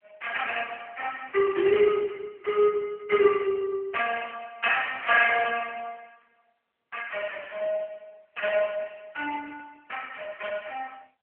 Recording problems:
phone line; 320 Hz to 3.1 kHz, AMR-NB

